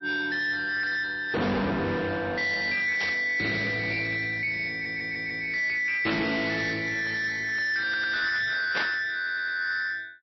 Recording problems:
codec artefacts; MP3, log-spectral distance 4 dB, nothing above 5.7 kHz
distortion; soft clipping, signal-to-distortion ratio 6 dB
static burst; at 3 s, at 6 s and at 8.5 s; peak -1 dB vs average level
audio stuttering; at 4.5 s, at 8 s and at 9 s

